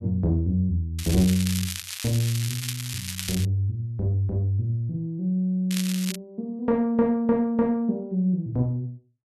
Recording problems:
crackle; from 1 to 3.5 s and at 5.5 s; loose cable, SNR 7 dB

